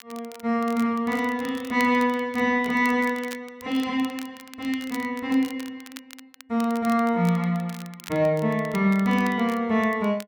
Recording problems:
crackle; vinyl, SNR 20 dB

